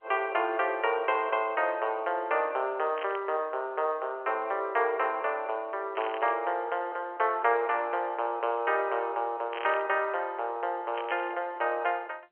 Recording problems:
phone line; 370 Hz to 3.2 kHz, G.711
burst of static; 4 times, first at 3 s; peak -5 dB vs average level

